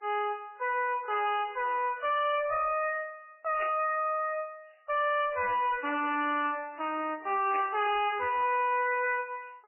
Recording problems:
codec artefacts; MP3, log-spectral distance 4 dB, nothing above 2.5 kHz
distorted audio; hard clipping, signal-to-distortion ratio 4 dB
static burst; at 3.5 s and at 7.5 s; peak -4 dB vs average level

